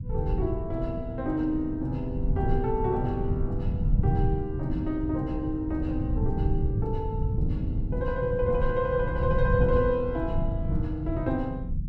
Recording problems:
low-frequency rumble; below 130 Hz, SNR 0 dB

